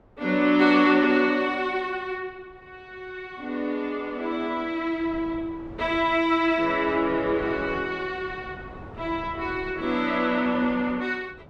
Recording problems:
wind noise; below 560 Hz, SNR 20 dB

